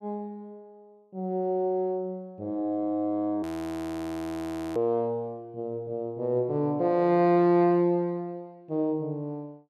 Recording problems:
audio freezing; at 3.5 s for 1.5 s

